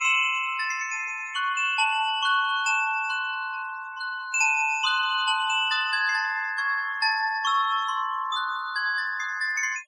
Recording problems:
denoising artefacts; signal-to-artefact ratio 21 dB

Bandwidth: 15 kHz